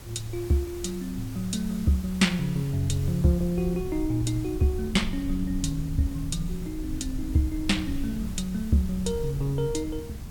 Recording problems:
background hiss; slope -3 dB per octave, SNR 19 dB
low-frequency rumble; below 94 Hz, SNR 10 dB

